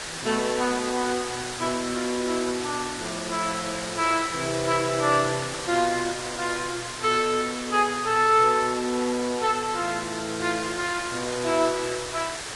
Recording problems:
lossy codec; Vorbis, log-spectral distance 9 dB
background hiss; SNR 7 dB

